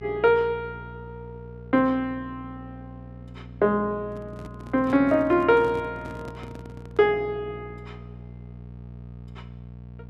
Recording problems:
hum; 60 Hz, harmonics up to 720 Hz, SNR 18 dB
microphone handling noise; from 4 to 7 s; peak -10 dB vs average level

